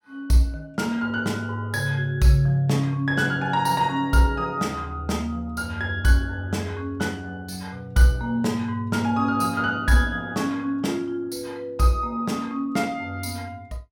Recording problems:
none

